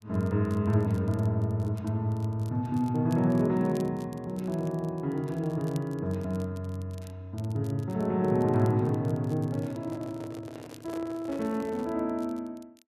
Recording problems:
crackle; vinyl, SNR 27 dB
microphone handling noise; from 9.5 to 12 s; peak -9 dB vs average level

